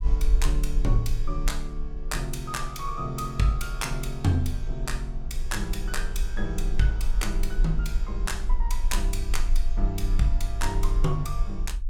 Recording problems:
rumble; below 42 Hz, strongest tone 22 Hz, SNR 0 dB

